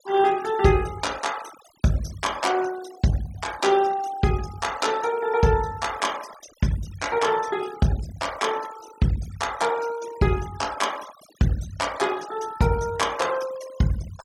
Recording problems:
noise reduction artefacts; signal-to-artefact ratio 17 dB

